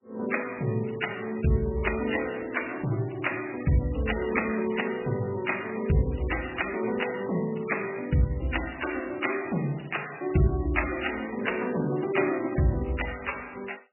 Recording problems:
codec artefacts; MP3, log-spectral distance 9 dB, nothing above 2.8 kHz

